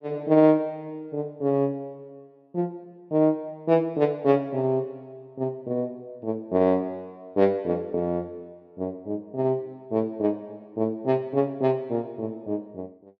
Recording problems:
none

